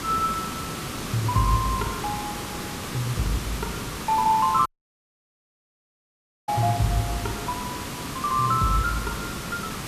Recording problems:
background hiss; SNR 6 dB
audio cutting out; at 4.5 s for 2 s

